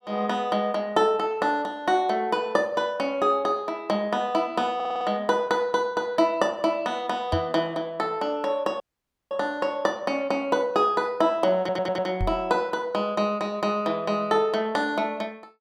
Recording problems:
stutter; at 5 s and at 12 s
knock on the microphone; at 7.5 s and at 12 s; peak 0 dB vs average level
dropout; at 9 s for 0.5 s

